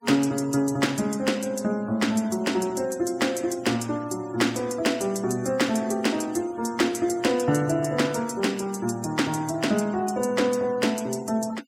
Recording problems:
noise reduction artefacts; signal-to-artefact ratio 22 dB

